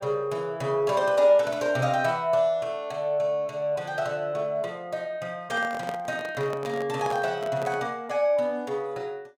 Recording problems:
microphone handling noise; from 5.5 to 8 s; peak -4 dB vs average level

